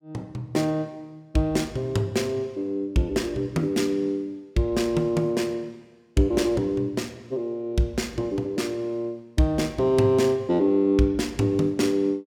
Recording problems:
none

